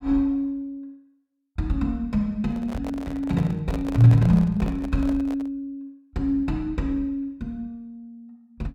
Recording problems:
microphone handling noise; from 2.5 to 5.5 s; peak -7 dB vs average level

